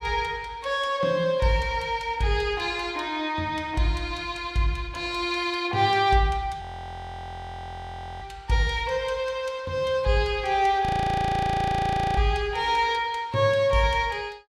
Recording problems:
audio freezing; at 6.5 s for 1.5 s and at 11 s for 1.5 s

